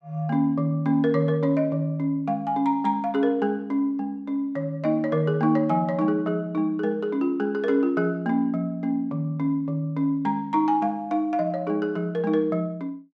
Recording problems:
none

